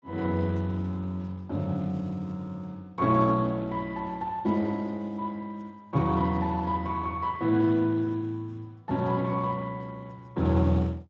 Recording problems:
lossy codec; Speex, log-spectral distance 2 dB

